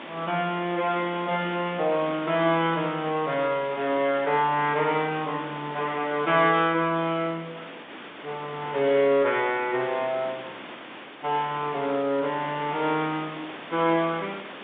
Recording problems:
telephone audio; 220 Hz to 3.6 kHz, G.711
hiss; SNR 15 dB

